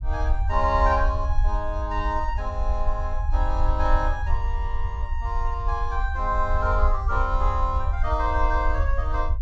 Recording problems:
treble missing; nothing above 8 kHz
low-frequency rumble; below 62 Hz, SNR 0 dB

